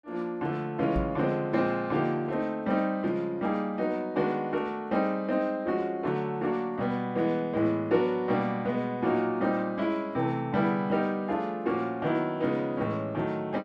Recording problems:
microphone thump; at 1 s; peak +1 dB vs average level

